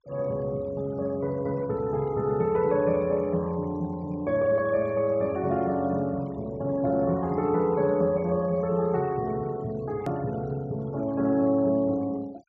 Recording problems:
low-pass filter; nothing above 7.4 kHz
denoising artefacts; signal-to-artefact ratio 26 dB
hard cut with a click; at 10 s

